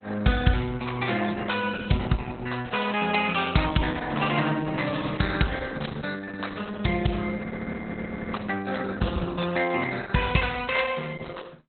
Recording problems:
lossy compression; Opus, log-spectral distance 9 dB, nothing above 4 kHz
frozen audio; at 7.5 s for 1 s

